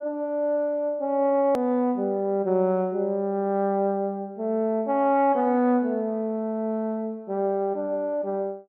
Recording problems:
click at an edit; at 1.5 s

